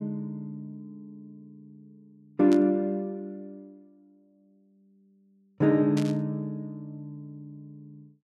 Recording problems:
burst of static; at 2.5 s and at 6 s; peak -7 dB vs average level

